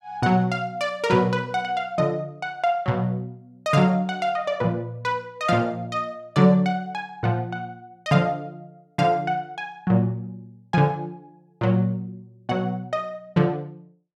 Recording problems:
none

